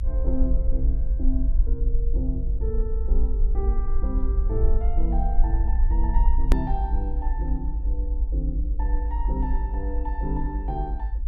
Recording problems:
low-frequency rumble; below 54 Hz, SNR -8 dB
edit click; at 6.5 s

